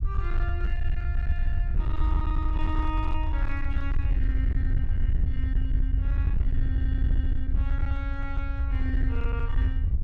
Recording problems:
distorted audio; hard clipping, uneven, signal-to-distortion ratio 12 dB
rumble; below 72 Hz, SNR -10 dB

